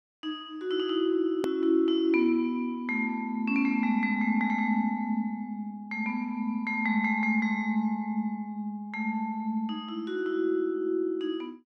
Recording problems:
click at an edit; at 1.5 s

